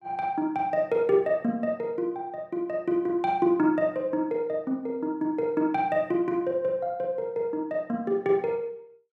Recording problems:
none

